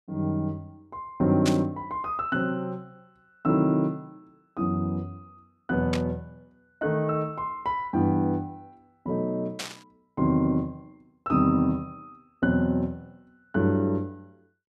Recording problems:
burst of static; at 1.5 s, at 6 s and at 9.5 s; peak +1 dB vs average level

